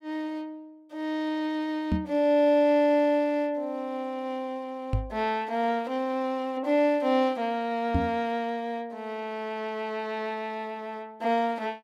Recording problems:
knock on the microphone; at 2 s, at 5 s and at 8 s; peak +5 dB vs average level

